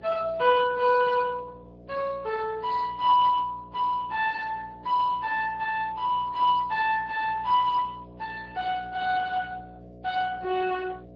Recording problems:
lossy codec; Vorbis, then Speex, log-spectral distance 3 dB
hum; 60 Hz, harmonics up to 720 Hz, SNR 22 dB

